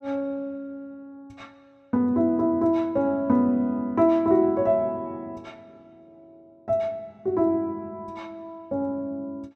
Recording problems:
none

